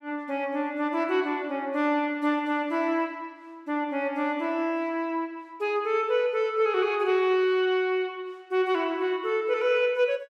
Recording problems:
none

